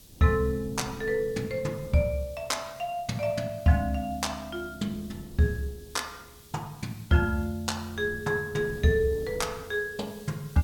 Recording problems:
hiss; SNR 23 dB
wind on the microphone; below 270 Hz, SNR 18 dB

